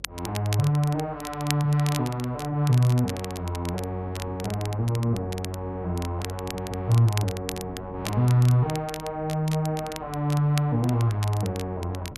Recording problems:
hum; 50 Hz, harmonics up to 550 Hz, SNR 24 dB
wind noise; below 320 Hz, SNR 23 dB
crackling; vinyl, SNR 14 dB

